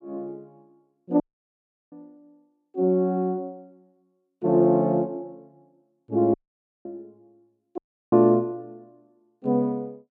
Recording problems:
audio cutting out; at 1 s for 0.5 s, at 6.5 s for 0.5 s and at 8 s

